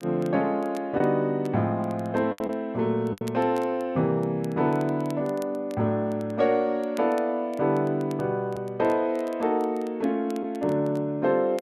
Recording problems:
crackling; vinyl, SNR 27 dB
lost packets; 1.9% of the sound replaced, filled with the last packet

